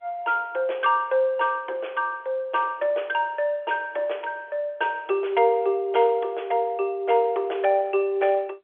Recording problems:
telephone audio; 300 Hz to 3.4 kHz, G.711

